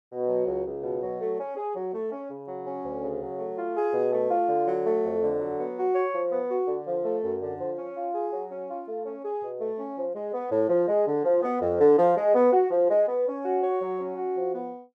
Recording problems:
none

